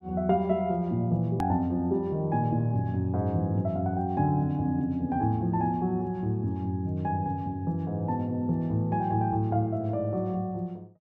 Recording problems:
edit click; at 1.5 s

